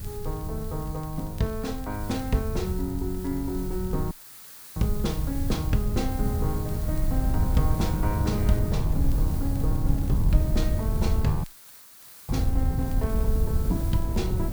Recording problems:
hiss; slope 0 dB per octave, SNR 11 dB
rumble; below 92 Hz, SNR 0 dB
wind on the microphone; below 120 Hz, SNR 1 dB
crackle; vinyl, SNR 29 dB
audio cutting out; at 4 s for 0.5 s and at 11 s for 1 s

